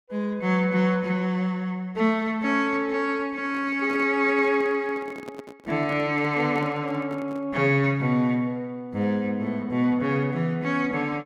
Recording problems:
handling noise; from 3.5 to 7.5 s; peak -10 dB vs average level

